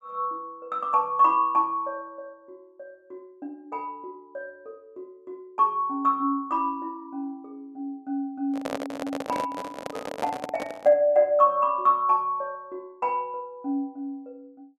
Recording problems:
microphone handling noise; from 8.5 to 11 s; peak -2 dB vs average level

